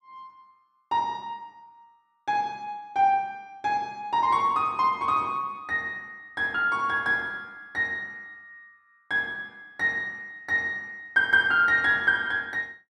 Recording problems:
none

